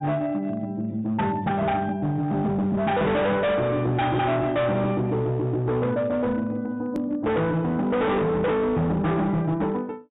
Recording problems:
low-pass filter; nothing above 4 kHz
distorted audio; hard clipping, signal-to-distortion ratio 7 dB
hard cut with a click; at 7 s

